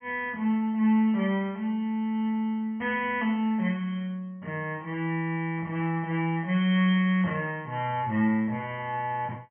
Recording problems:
treble cut off; nothing above 3.2 kHz

